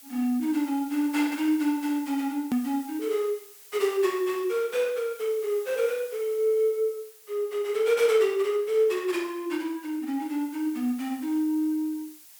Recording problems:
hiss; slope +2 dB per octave, SNR 20 dB
edit click; at 2.5 s

